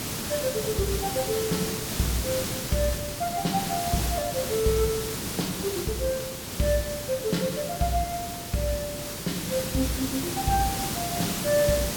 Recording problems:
background hiss; SNR 2 dB

